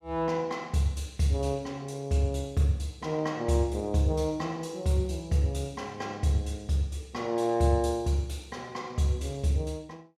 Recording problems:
none

